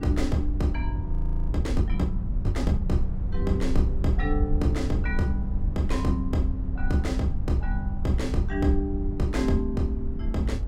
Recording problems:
low-frequency rumble; below 68 Hz, SNR 2 dB
frozen audio; at 1 s

